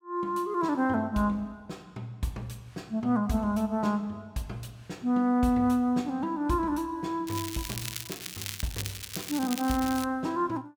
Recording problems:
crackle; from 7.5 to 10 s; loose cable, SNR 8 dB

